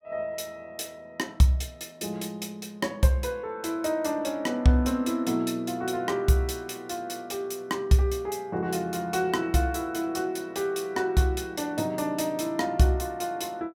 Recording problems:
none

